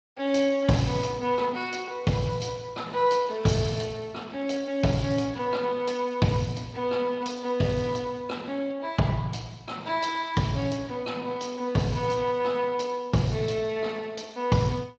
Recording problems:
lossy codec; Speex, log-spectral distance 4 dB

